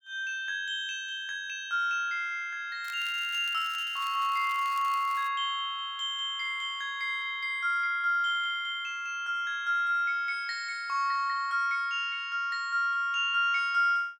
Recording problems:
crackle; from 3 to 5.5 s; loose cable, SNR 21 dB

